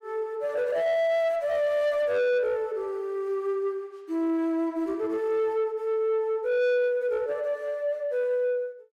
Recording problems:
distortion; soft clipping, signal-to-distortion ratio 11 dB

